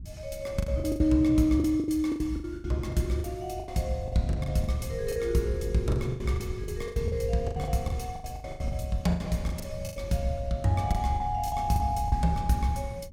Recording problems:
wind on the microphone; below 110 Hz, SNR 12 dB
packet loss; 16% of the sound replaced, filled with the last packet

